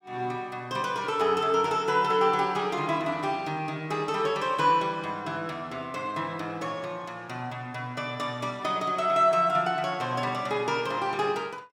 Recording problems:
none

